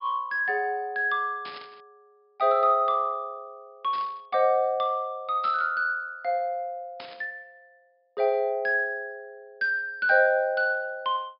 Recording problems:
low-pass filter; nothing above 5.5 kHz
static burst; 4 times, first at 1.5 s; peak -12 dB vs average level

